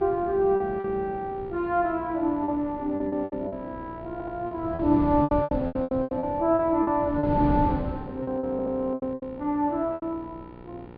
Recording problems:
low-pass filter; nothing above 5 kHz
hum; 60 Hz, harmonics up to 2.4 kHz, SNR 19 dB
wind noise; below 280 Hz, SNR 9 dB
lost packets; 12% of the sound replaced, filled with repeated pitch periods
audio stuttering; at 4 s and at 8.5 s

